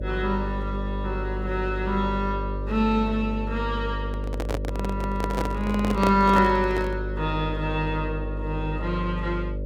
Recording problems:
hum; 50 Hz, harmonics up to 600 Hz, SNR 5 dB
microphone handling noise; from 4 to 7 s; peak +3 dB vs average level

